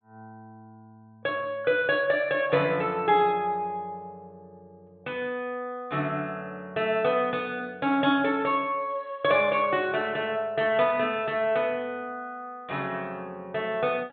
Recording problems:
treble missing; nothing above 4 kHz

